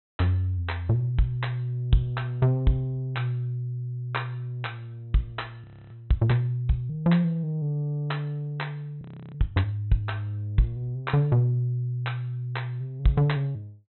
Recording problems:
treble missing; nothing above 4 kHz
audio freezing; at 5.5 s and at 9 s

